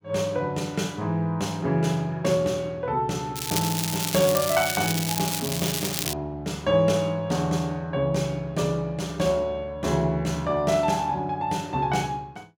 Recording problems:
crackling; from 3.5 to 6 s; loose cable, SNR 3 dB

